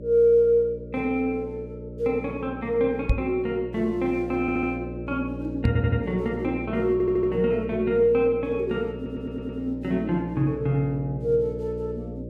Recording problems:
electrical hum; 60 Hz, harmonics up to 600 Hz, SNR 11 dB
microphone bump; at 3 s and at 5.5 s; peak +5 dB vs average level
audio stuttering; 4 times, first at 4.5 s

